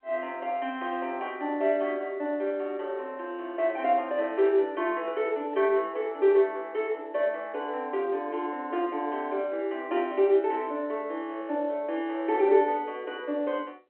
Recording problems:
telephone audio; 260 Hz to 3.2 kHz, G.711

